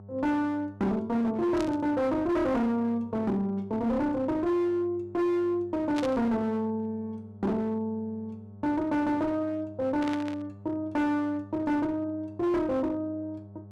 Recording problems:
distortion; hard clipping, uneven, signal-to-distortion ratio 10 dB
hum; 50 Hz, harmonics up to 900 Hz, SNR 19 dB
static burst; at 1.5 s, at 6 s and at 10 s; peak -5 dB vs average level

